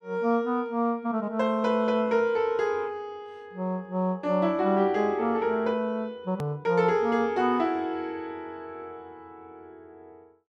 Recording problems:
click at an edit; at 6.5 s

